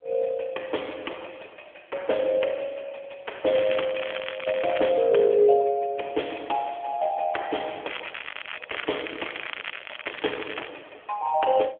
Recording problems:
phone line; 300 Hz to 3.4 kHz, AMR-NB
crackling; from 3.5 to 5 s and from 8 to 11 s; loose cable, SNR 10 dB

